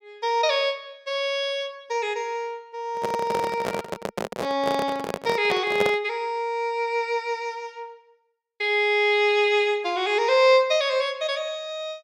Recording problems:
handling noise; from 3 to 6 s; peak +1 dB vs average level

